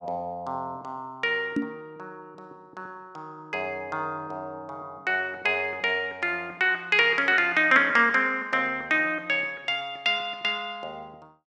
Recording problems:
knock on the microphone; at 1.5 s; peak +2 dB vs average level

